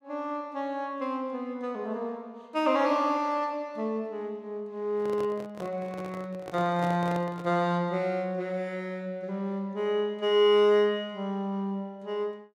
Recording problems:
microphone handling noise; from 5 to 7.5 s; peak -6 dB vs average level

